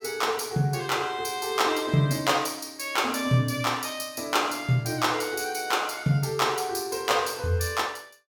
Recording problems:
none

